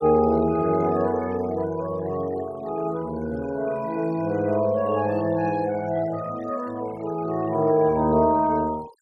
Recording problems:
noise reduction artefacts; signal-to-artefact ratio 21 dB

